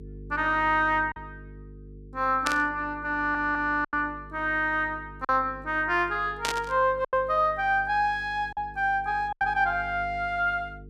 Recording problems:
mains hum; 50 Hz, harmonics up to 450 Hz, SNR 19 dB
lost packets; 4% of the sound replaced, filled with silence
burst of static; at 2.5 s and at 6.5 s; peak +1 dB vs average level
audio stuttering; at 3 s

